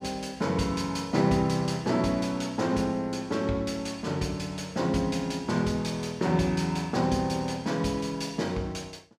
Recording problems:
none

